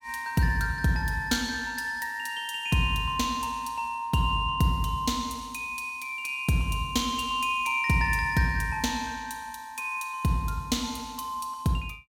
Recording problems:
none

